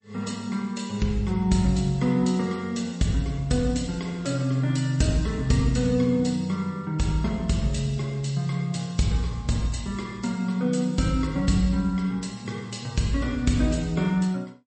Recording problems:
lossy codec; MP3, log-spectral distance 3 dB, nothing above 8.2 kHz

